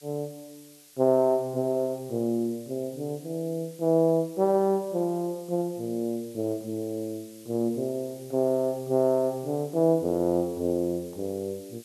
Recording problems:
background hiss; slope +3 dB per octave, SNR 23 dB

